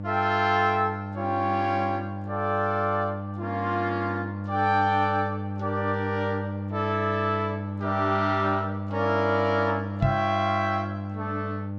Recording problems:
hum; 50 Hz, harmonics up to 900 Hz, SNR 6 dB
microphone thump; at 10 s; peak +5 dB vs average level

